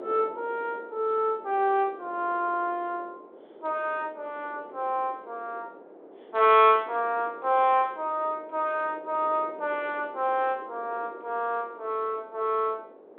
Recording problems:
telephone audio; 320 Hz to 4 kHz, G.726
wind on the microphone; below 600 Hz, SNR 19 dB

